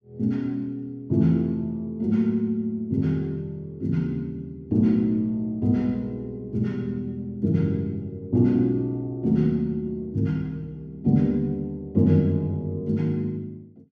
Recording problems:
none

